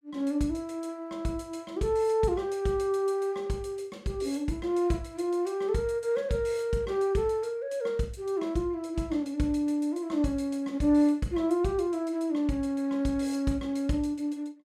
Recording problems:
none

